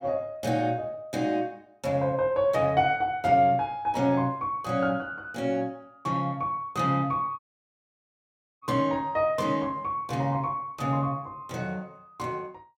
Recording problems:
audio cutting out; at 7.5 s for 1 s

